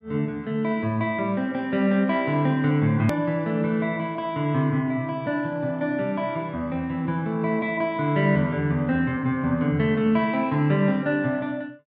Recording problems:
edit click; at 3 s

